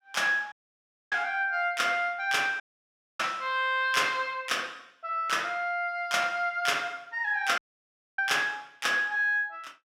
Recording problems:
audio cutting out; at 0.5 s for 0.5 s, at 2.5 s for 0.5 s and at 7.5 s for 0.5 s

